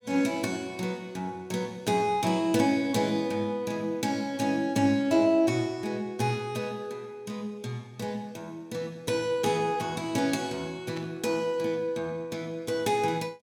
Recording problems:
static burst; at 11 s; peak -11 dB vs average level

